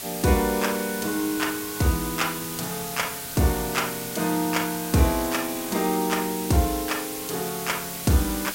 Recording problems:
background hiss; SNR 6 dB

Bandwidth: 16 kHz